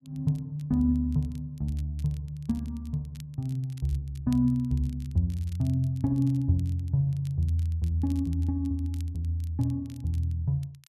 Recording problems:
crackle; vinyl, SNR 28 dB

